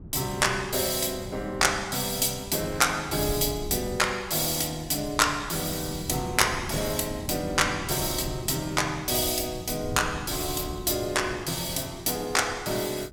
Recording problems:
wind noise; below 190 Hz, SNR 14 dB

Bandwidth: 17 kHz